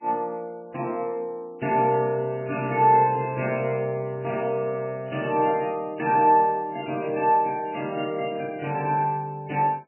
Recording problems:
lossy compression; MP3, log-spectral distance 3 dB, nothing above 2.8 kHz

